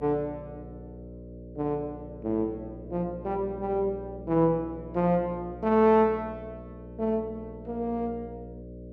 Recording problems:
hum; 60 Hz, harmonics up to 600 Hz, SNR 15 dB

